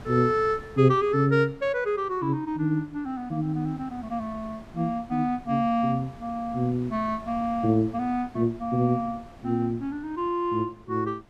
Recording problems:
wind on the microphone; below 750 Hz, SNR 22 dB

